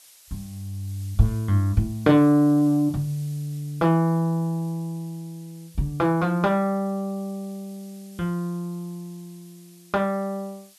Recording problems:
hiss; slope +3 dB per octave, SNR 26 dB

